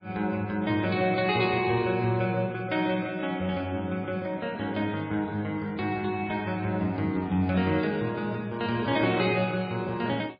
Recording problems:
lossy compression; MP3, log-spectral distance 2 dB, nothing above 4.2 kHz

